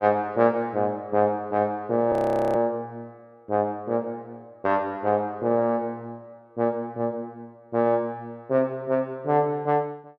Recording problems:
audio freezing; at 2 s

